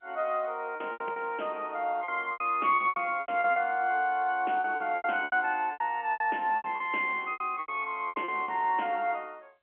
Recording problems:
telephone audio; 300 Hz to 3.2 kHz, G.711
packet loss; 15% of the sound replaced, filled with repeated pitch periods

